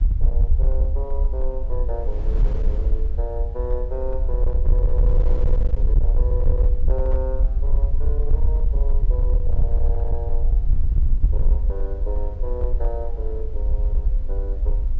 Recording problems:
low-pass filter; nothing above 8 kHz
distorted audio; hard clipping, signal-to-distortion ratio 11 dB
electrical hum; 60 Hz, harmonics up to 840 Hz, SNR 22 dB
rumble; below 52 Hz, SNR -11 dB
wind on the microphone; below 260 Hz, SNR 10 dB

